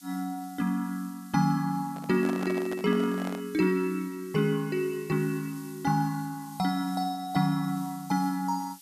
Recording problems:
background hiss; SNR 21 dB
handling noise; from 2 to 3.5 s; peak -5 dB vs average level

